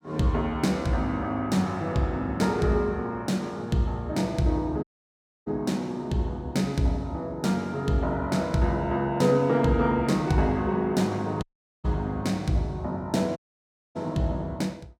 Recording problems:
audio cutting out; at 5 s for 0.5 s, at 11 s and at 13 s for 0.5 s

